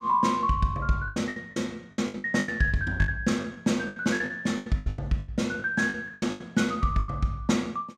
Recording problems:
packet loss; 17% of the sound replaced, filled with the last packet

